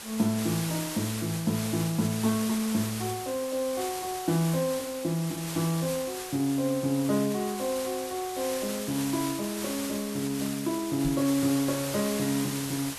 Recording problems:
background hiss; slope -1 dB per octave, SNR 7 dB
microphone bump; at 11 s; peak -1 dB vs average level

